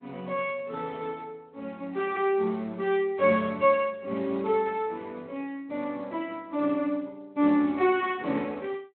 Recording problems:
telephone audio; 220 Hz to 3.9 kHz, Speex

